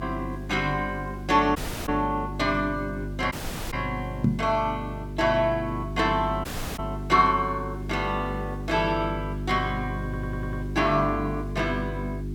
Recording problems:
mains hum; 50 Hz, harmonics up to 400 Hz, SNR 8 dB
background hiss; slope -3 dB per octave, SNR 30 dB
dropout; at 1.5 s, at 3.5 s and at 6.5 s
microphone bump; at 4 s; peak +8 dB vs average level
stutter; at 10 s

